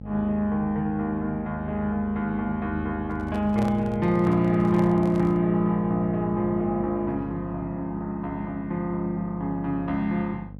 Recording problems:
hum; 50 Hz, harmonics up to 550 Hz, SNR 15 dB
microphone handling noise; from 3 to 5.5 s; peak -6 dB vs average level

